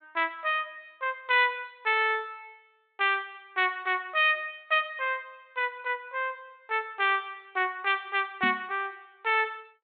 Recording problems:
treble cut off; nothing above 4 kHz
microphone bump; at 8.5 s; peak -3 dB vs average level

